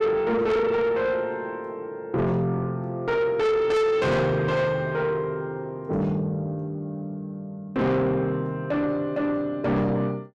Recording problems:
distortion; soft clipping, signal-to-distortion ratio 7 dB

